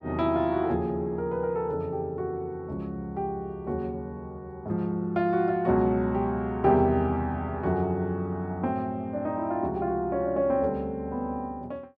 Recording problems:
none

